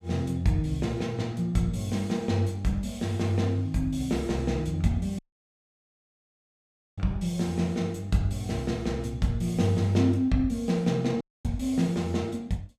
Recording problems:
audio cutting out; at 5 s for 2 s and at 11 s

